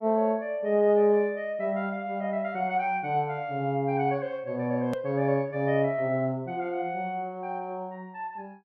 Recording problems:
click at an edit; at 5 s

